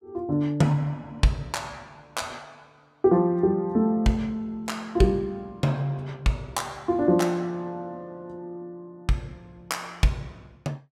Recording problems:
none

